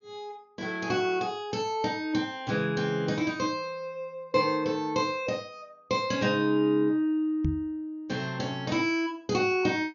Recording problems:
low-pass filter; nothing above 6.6 kHz
microphone bump; at 7.5 s; peak +3 dB vs average level

